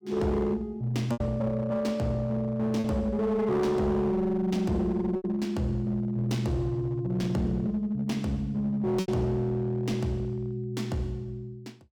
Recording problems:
distorted audio; hard clipping, uneven, signal-to-distortion ratio 11 dB
packet loss; 2% of the sound replaced, filled with repeated pitch periods

